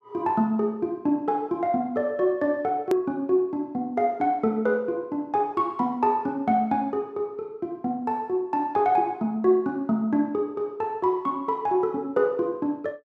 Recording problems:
hard cut with a click; at 3 s

